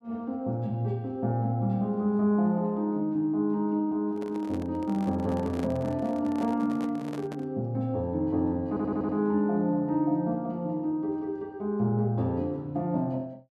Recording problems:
handling noise; from 4 to 7.5 s; peak -6 dB vs average level
stutter; at 8.5 s

